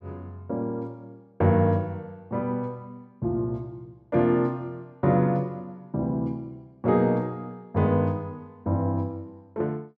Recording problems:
none

